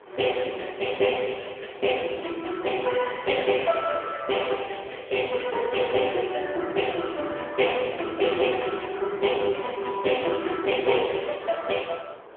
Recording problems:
phone line; 300 Hz to 3.4 kHz, AMR-NB
wind on the microphone; below 1 kHz, SNR 23 dB

